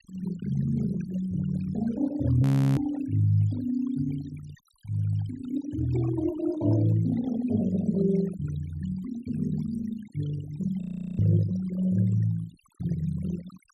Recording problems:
noise reduction artefacts; signal-to-artefact ratio 17 dB
frozen audio; at 2.5 s and at 11 s

